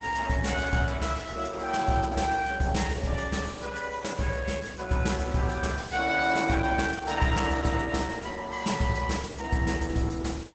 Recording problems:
lossy codec; Opus, log-spectral distance 5 dB, nothing above 8 kHz

